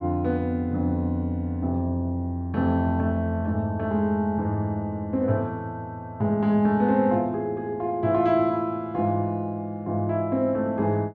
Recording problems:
low-pass filter; nothing above 8 kHz

